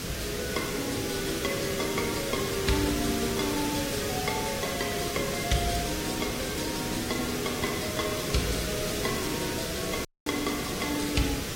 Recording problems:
lossy compression; AAC, log-spectral distance 9 dB, nothing above 14.7 kHz
hiss; SNR -1 dB
crackle; vinyl, SNR 25 dB
audio cutting out; at 10 s

